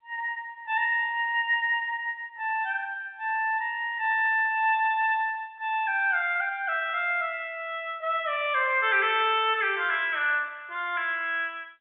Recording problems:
telephone audio; 340 Hz to 3.6 kHz, G.711

